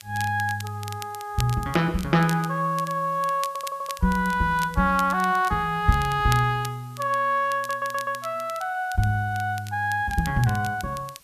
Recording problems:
hiss; slope 0 dB per octave, SNR 28 dB
crackling; vinyl, SNR 17 dB
stutter; at 3.5 s and at 7.5 s

